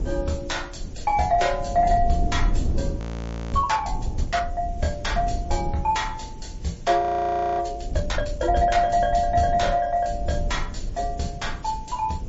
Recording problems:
treble cut off; nothing above 7.6 kHz
codec artefacts; MP3, log-spectral distance 4 dB
background hiss; slope +1 dB per octave, SNR 30 dB
rumble; below 80 Hz, SNR 8 dB
frozen audio; at 3 s for 0.5 s and at 7 s for 0.5 s

